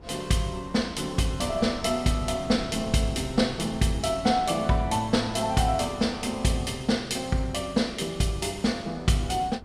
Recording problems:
wind noise; below 280 Hz, SNR 17 dB

